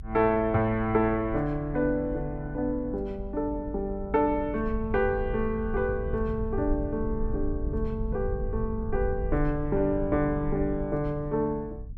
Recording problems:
rumble; below 78 Hz, SNR 8 dB

